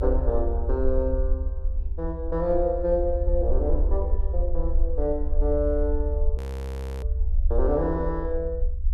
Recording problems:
low-frequency rumble; below 68 Hz, SNR 1 dB
audio freezing; at 6.5 s for 0.5 s

